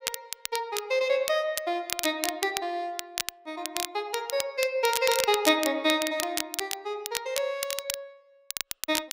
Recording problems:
crackle; vinyl, SNR 5 dB

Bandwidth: 15.5 kHz